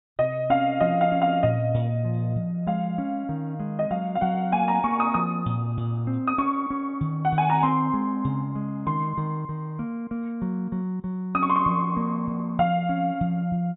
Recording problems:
treble cut off; nothing above 4 kHz

